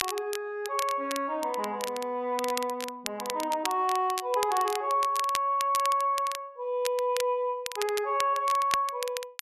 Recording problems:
crackling; vinyl, SNR 9 dB

